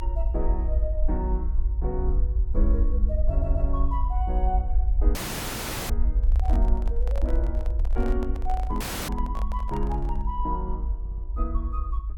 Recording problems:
rumble; below 54 Hz, SNR -7 dB
stutter; at 3.5 s and at 11 s
audio cutting out; at 5 s for 1 s and at 9 s
handling noise; from 6 to 10 s; peak -4 dB vs average level

